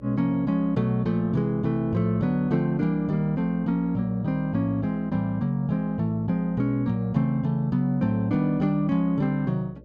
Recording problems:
electrical hum; 60 Hz, harmonics up to 600 Hz, SNR 23 dB

